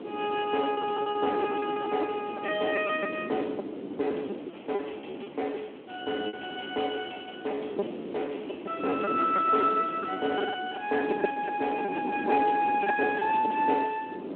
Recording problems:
phone line; 300 Hz to 3.3 kHz, Speex
background hiss; SNR 27 dB
wind noise; below 510 Hz, SNR 8 dB
lost packets; 12% of the sound replaced, filled with repeated pitch periods

